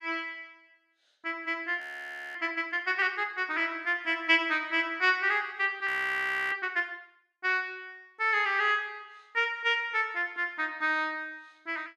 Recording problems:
audio freezing; at 2 s for 0.5 s and at 6 s for 0.5 s

